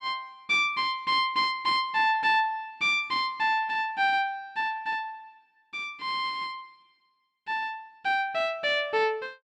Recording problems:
none

